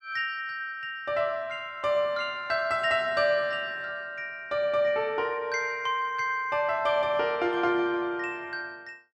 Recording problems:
none

